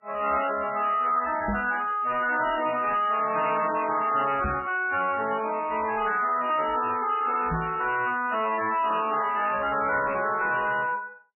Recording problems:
codec artefacts; MP3, log-spectral distance 6 dB, nothing above 2.9 kHz
distorted audio; soft clipping, signal-to-distortion ratio 9 dB
knock on the microphone; at 1.5 s, at 4.5 s and at 7.5 s; peak 0 dB vs average level

